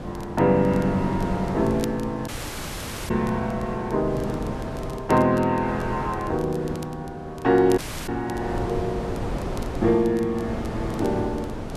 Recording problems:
wind noise; below 570 Hz, SNR 8 dB
crackling; vinyl, SNR 24 dB
audio cutting out; at 2.5 s for 1 s and at 8 s

